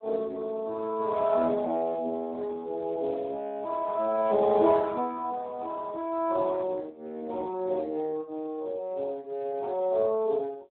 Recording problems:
phone line; 220 Hz to 3.9 kHz, Speex

